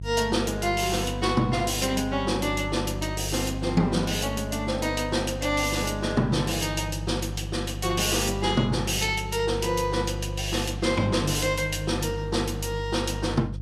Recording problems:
hum; 50 Hz, harmonics up to 350 Hz, SNR 8 dB

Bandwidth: 15 kHz